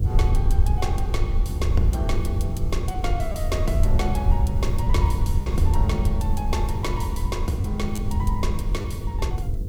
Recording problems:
hum; 50 Hz, harmonics up to 500 Hz, SNR 10 dB
background hiss; SNR 26 dB
low-frequency rumble; below 84 Hz, SNR -5 dB
packet loss; 1.7% of the sound replaced, filled with repeated pitch periods

